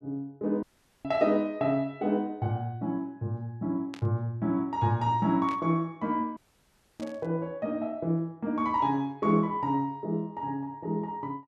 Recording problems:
audio cutting out; at 0.5 s and at 6.5 s for 0.5 s
static burst; at 4 s, at 5.5 s and at 7 s; peak -10 dB vs average level

